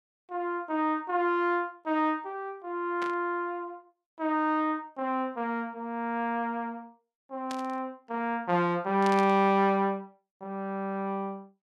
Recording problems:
static burst; at 3 s, at 7.5 s and at 9 s; peak -6 dB vs average level

